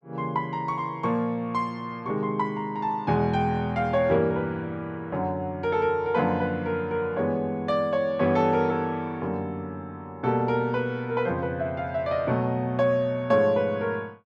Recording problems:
none

